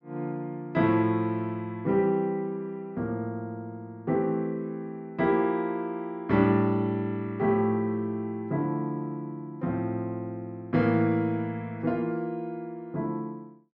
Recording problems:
none

